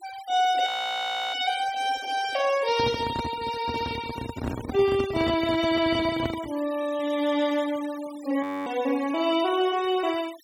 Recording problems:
denoising artefacts; signal-to-artefact ratio 17 dB
frozen audio; at 0.5 s for 0.5 s and at 8.5 s
handling noise; from 2.5 to 6.5 s; peak -1 dB vs average level

